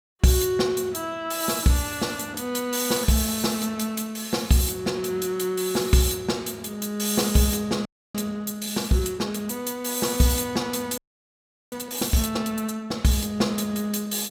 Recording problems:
audio freezing; at 8 s and at 11 s for 0.5 s

